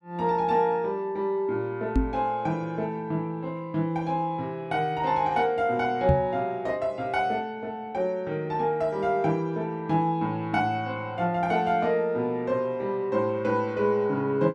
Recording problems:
microphone bump; at 2 s and at 6 s; peak +6 dB vs average level

